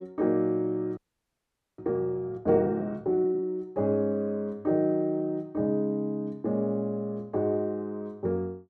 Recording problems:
frozen audio; at 1 s for 1 s

